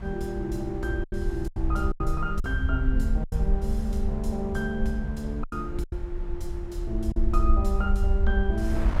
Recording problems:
low-frequency rumble; below 60 Hz, SNR -1 dB
wind noise; below 510 Hz, SNR 13 dB
packet loss; 6% of the sound replaced, filled with silence

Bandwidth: 16 kHz